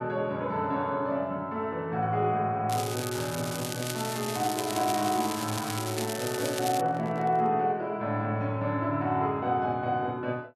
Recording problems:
crackling; from 2.5 to 7 s; loose cable, SNR 7 dB
handling noise; from 6 to 7.5 s; peak -8 dB vs average level

